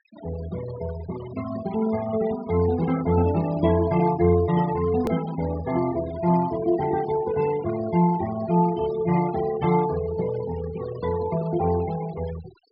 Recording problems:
treble missing; nothing above 5.5 kHz
noise reduction artefacts; signal-to-artefact ratio 15 dB
hard cut with a click; at 5 s

